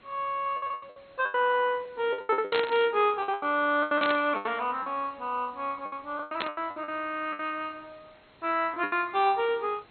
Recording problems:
lossy compression; MP2, log-spectral distance 5 dB, nothing above 3.6 kHz
background hiss; SNR 29 dB
lost packets; 15% of the sound replaced, filled with the last packet
burst of static; at 2.5 s, at 4 s and at 6.5 s; peak +1 dB vs average level

